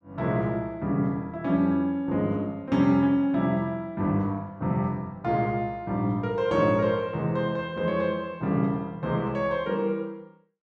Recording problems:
none

